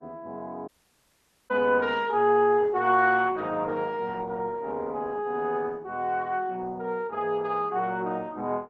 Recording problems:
lossy codec; Opus, log-spectral distance 2 dB
audio cutting out; at 0.5 s for 1 s

